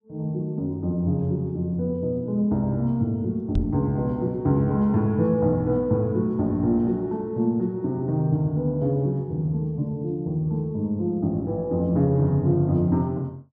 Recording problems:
microphone thump; at 3.5 s; peak +1 dB vs average level

